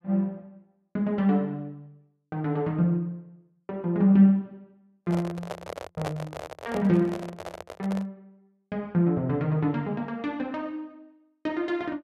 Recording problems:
microphone handling noise; from 5 to 8 s; peak -1 dB vs average level

